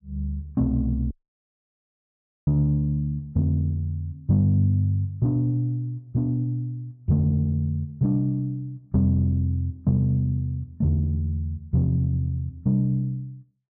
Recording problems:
dropout; at 1 s for 1.5 s

